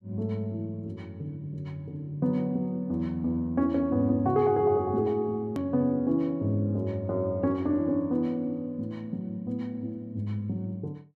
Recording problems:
hard cut with a click; at 5.5 s

